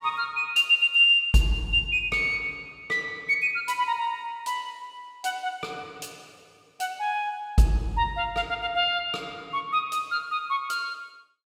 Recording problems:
none

